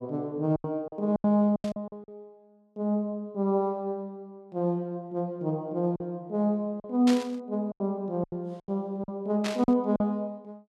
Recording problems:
packet loss; 8% of the sound replaced, filled with silence
static burst; at 1.5 s, at 7 s and at 9.5 s; peak -1 dB vs average level

